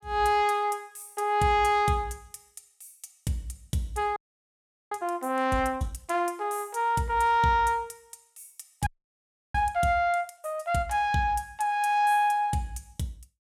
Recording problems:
audio freezing; at 4 s for 1 s and at 9 s for 0.5 s

